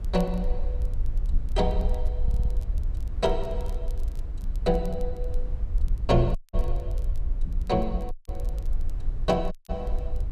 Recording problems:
low-frequency rumble; below 52 Hz, SNR 2 dB
wind on the microphone; below 330 Hz, SNR 18 dB
crackle; vinyl, SNR 29 dB
stutter; at 2 s
audio cutting out; at 6.5 s, at 8 s and at 9.5 s

